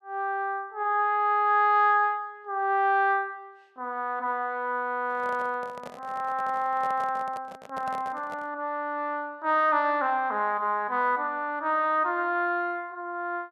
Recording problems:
handling noise; from 5 to 8.5 s; peak -9 dB vs average level

